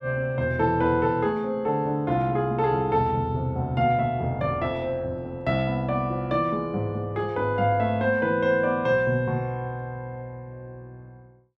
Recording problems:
none

